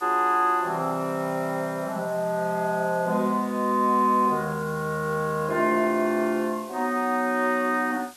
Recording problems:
background hiss; slope +1 dB per octave, SNR 22 dB

